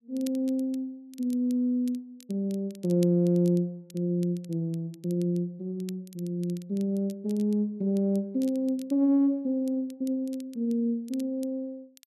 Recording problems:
crackle; vinyl, SNR 25 dB

